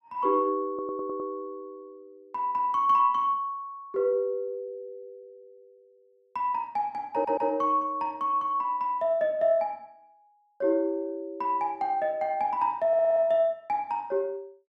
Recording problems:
stutter; at 0.5 s, at 7 s and at 13 s

